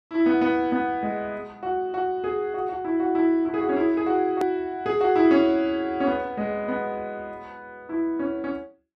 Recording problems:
click at an edit; at 4.5 s

